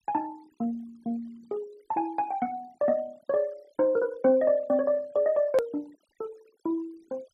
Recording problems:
noise reduction artefacts; signal-to-artefact ratio 28 dB
click at an edit; at 5.5 s

